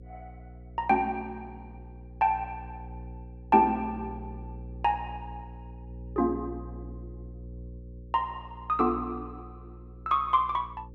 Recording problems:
electrical hum; 60 Hz, harmonics up to 540 Hz, SNR 15 dB

